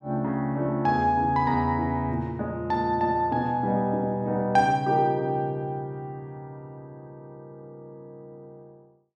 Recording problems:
none

